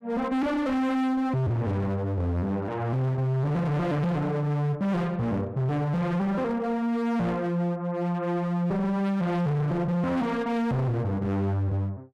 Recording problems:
distorted audio; hard clipping, signal-to-distortion ratio 7 dB

